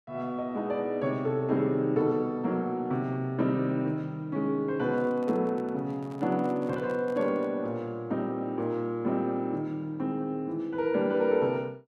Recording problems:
microphone handling noise; from 5 to 7.5 s; peak -11 dB vs average level

